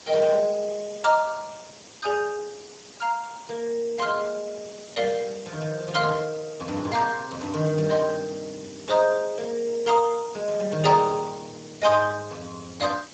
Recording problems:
lossy compression; Speex, log-spectral distance 9 dB, nothing above 7.3 kHz
background hiss; SNR 19 dB

